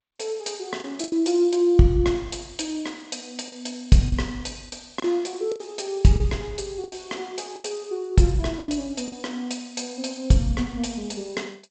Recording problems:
codec artefacts; G.722, log-spectral distance 5 dB, nothing above 7.8 kHz
packet loss; 6% of the sound replaced, filled with the last packet

